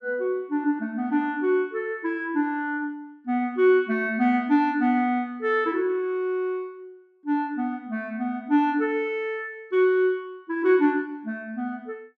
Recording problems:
none

